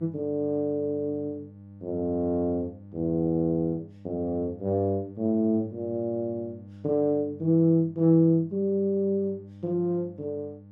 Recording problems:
electrical hum; 50 Hz, harmonics up to 600 Hz, SNR 20 dB

